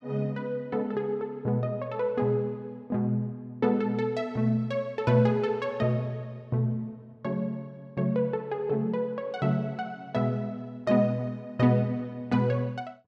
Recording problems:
none

